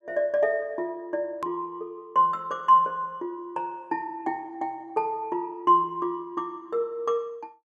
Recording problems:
click at an edit; at 1.5 s

